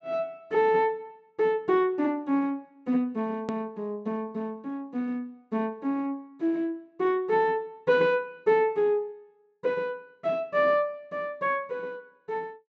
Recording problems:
treble cut off; nothing above 8 kHz
edit click; at 3.5 s

